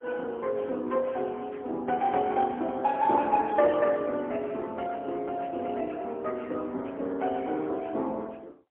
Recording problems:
telephone audio; 220 Hz to 3 kHz, AMR-NB, then MP3

